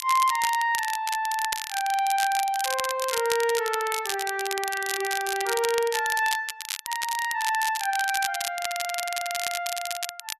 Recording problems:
crackle; vinyl, SNR 5 dB
audio stuttering; at 8.5 s

